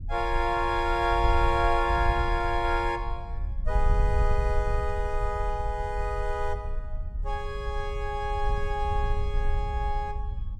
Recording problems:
wind noise; below 62 Hz, SNR 3 dB

